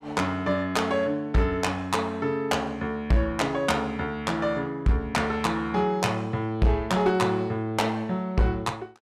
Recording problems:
distortion; hard clipping, uneven, signal-to-distortion ratio 10 dB

